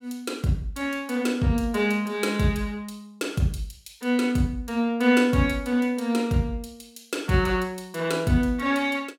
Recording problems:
none

